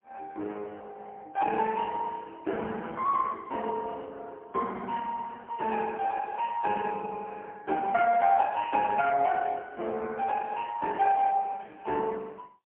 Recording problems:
telephone audio; 240 Hz to 3.2 kHz, AMR-NB, then MP3

